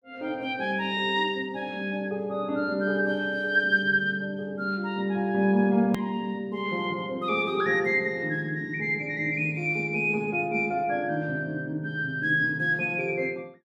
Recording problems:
edit click; at 6 s

